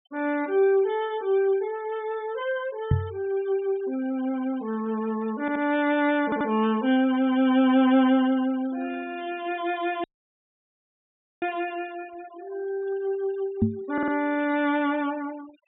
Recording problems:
treble cut off; nothing above 3.8 kHz
noise reduction artefacts; signal-to-artefact ratio 23 dB
microphone thump; at 3 s and at 14 s; peak +6 dB vs average level
audio stuttering; at 5.5 s, at 6 s and at 14 s
dropout; at 10 s for 1.5 s

